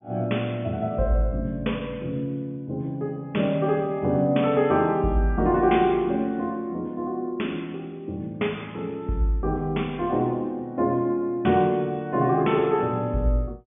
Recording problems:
treble cut off; nothing above 3.5 kHz

